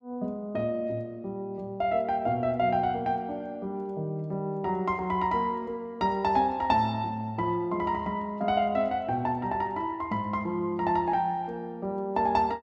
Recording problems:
none

